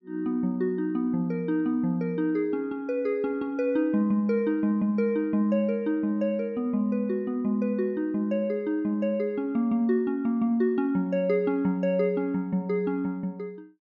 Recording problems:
none

